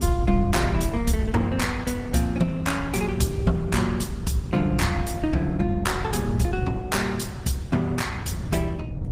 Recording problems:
lossy codec; Opus, log-spectral distance 2 dB, nothing above 15.5 kHz
low-frequency rumble; below 110 Hz, SNR 2 dB

